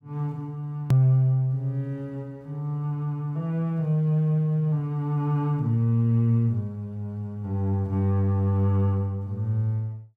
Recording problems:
click at an edit; at 1 s

